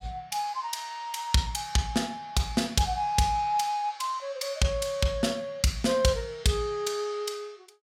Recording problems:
none

